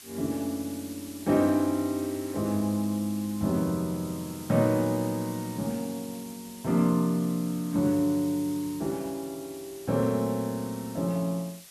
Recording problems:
hiss; slope +2 dB per octave, SNR 16 dB

